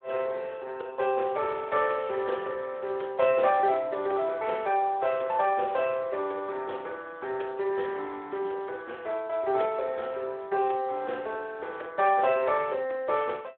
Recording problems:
telephone audio; 340 Hz to 3.6 kHz, Speex

